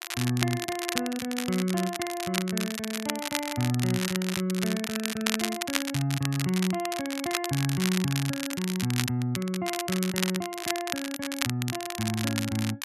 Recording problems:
crackle; vinyl, SNR 3 dB

